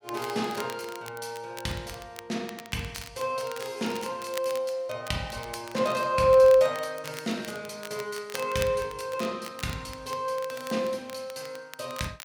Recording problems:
crackling; vinyl, SNR 16 dB

